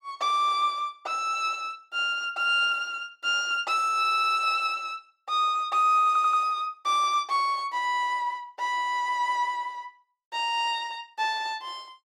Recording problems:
stutter; at 4 s and at 6 s

